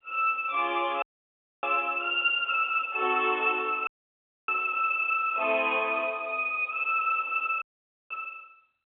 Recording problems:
telephone audio; 280 Hz to 3.4 kHz, G.711
audio cutting out; at 1 s for 0.5 s, at 4 s for 0.5 s and at 7.5 s

